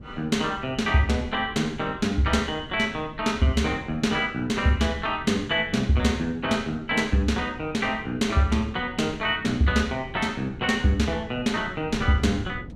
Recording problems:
wind on the microphone; below 230 Hz, SNR 17 dB

